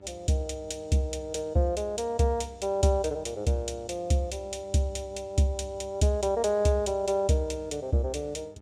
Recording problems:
electrical hum; 50 Hz, harmonics up to 1.8 kHz, SNR 26 dB

